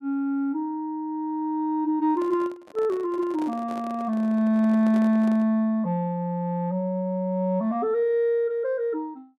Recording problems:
microphone handling noise; from 2 to 5.5 s; peak -10 dB vs average level

